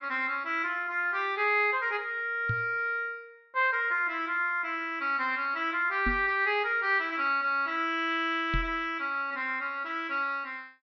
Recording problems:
low-pass filter; nothing above 6.2 kHz
microphone bump; at 2.5 s, at 6 s and at 8.5 s; peak -1 dB vs average level

